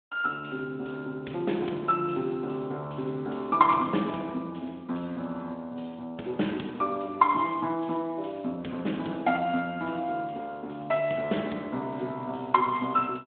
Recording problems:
telephone audio; 170 Hz to 3.7 kHz, Speex

